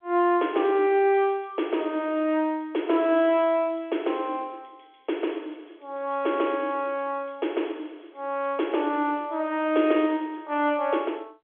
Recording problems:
phone line; 280 Hz to 3.4 kHz, G.711

